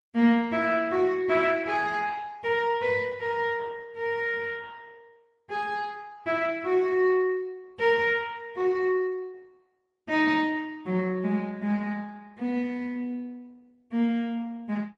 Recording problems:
lossy compression; Opus, then MP3, log-spectral distance 2 dB

